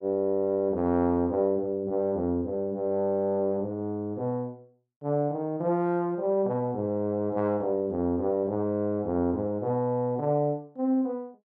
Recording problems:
none

